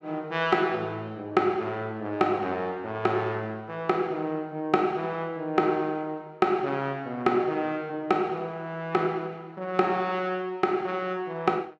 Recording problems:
none

